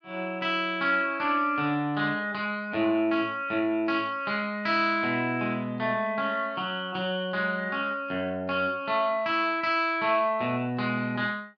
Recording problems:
none

